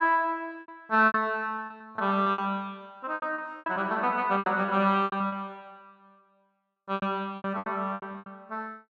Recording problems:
lost packets; 16% of the sound replaced, filled with repeated pitch periods

